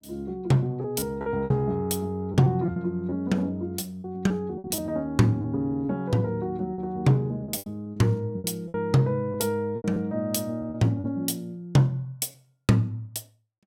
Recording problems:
lost packets; 8% of the sound replaced, filled with repeated pitch periods

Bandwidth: 17.5 kHz